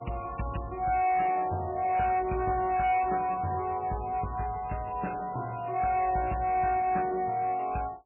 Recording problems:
lossy codec; MP3, log-spectral distance 4 dB
distortion; soft clipping, signal-to-distortion ratio 11 dB

